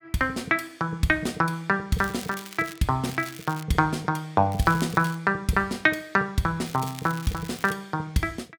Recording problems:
crackle; 4 times, first at 2 s; loose cable, SNR 17 dB

